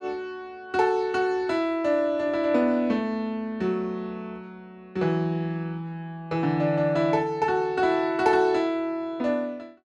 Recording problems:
none

